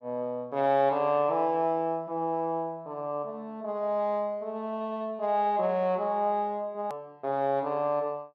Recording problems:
hard cut with a click; at 7 s

